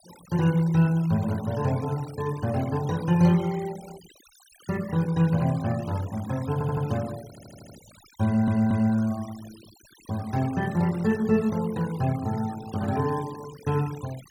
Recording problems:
denoising artefacts; signal-to-artefact ratio 20 dB
stutter; at 6.5 s, at 7.5 s and at 8.5 s

